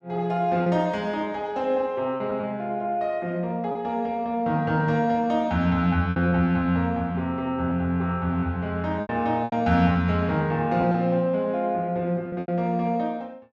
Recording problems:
packet loss; 4% of the sound replaced, filled with repeated pitch periods

